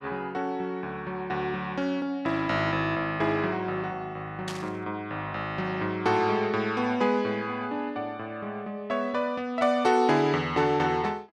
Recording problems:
burst of static; at 4.5 s; peak -5 dB vs average level

